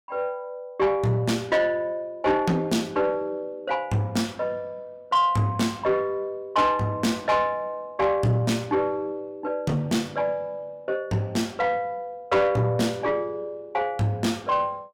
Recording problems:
distorted audio; soft clipping, signal-to-distortion ratio 11 dB

